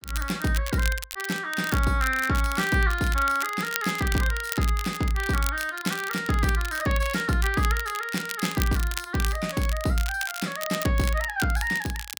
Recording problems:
crackle; vinyl, SNR 10 dB

